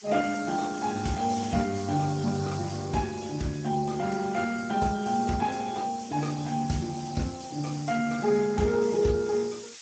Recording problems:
lossy codec; Speex, log-spectral distance 13 dB, nothing above 7.6 kHz
hiss; slope +5 dB per octave, SNR 17 dB

